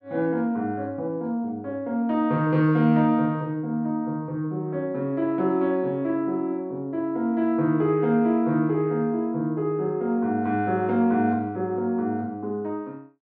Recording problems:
none

